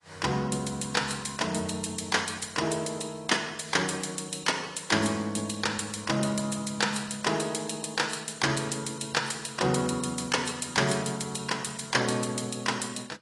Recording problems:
lossy codec; AAC, log-spectral distance 8 dB, nothing above 10.4 kHz

